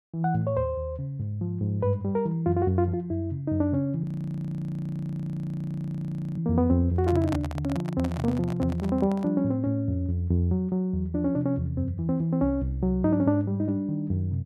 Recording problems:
audio freezing; at 4 s for 2.5 s
handling noise; from 7 to 9.5 s; peak -3 dB vs average level

